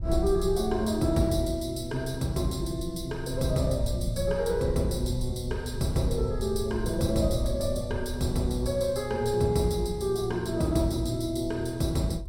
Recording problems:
wind noise; below 82 Hz, SNR 10 dB

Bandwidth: 16.5 kHz